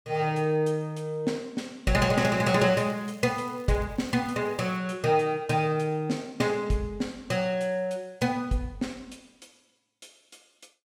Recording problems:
crackle; from 2 to 5 s; loose cable, SNR 28 dB

